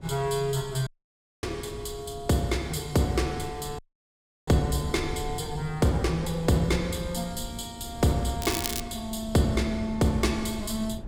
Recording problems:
electrical hum; 50 Hz, harmonics up to 1.4 kHz, SNR 25 dB
wind on the microphone; below 140 Hz, SNR 14 dB
dropout; at 1 s for 0.5 s and at 4 s for 0.5 s
crackling; at 8.5 s; loose cable, SNR 4 dB

